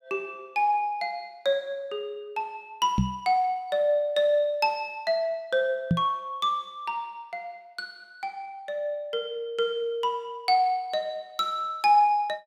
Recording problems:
knock on the microphone; at 3 s and at 6 s; peak +7 dB vs average level

